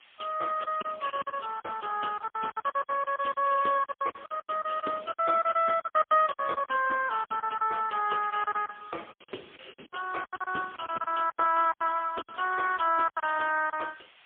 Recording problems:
phone line; 280 Hz to 2.8 kHz, AMR-NB, then MP3
hiss; SNR 27 dB
lost packets; 16% of the sound replaced, filled with silence

